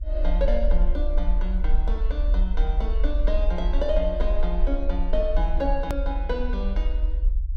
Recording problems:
low-frequency rumble; below 42 Hz, SNR -4 dB
edit click; at 6 s

